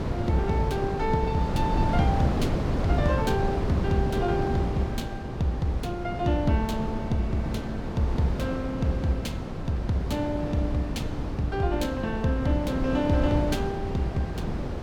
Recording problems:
wind on the microphone; below 360 Hz, SNR 2 dB

